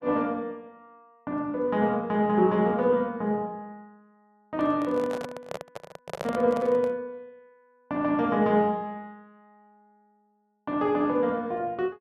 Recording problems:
handling noise; from 4.5 to 7 s; peak -3 dB vs average level

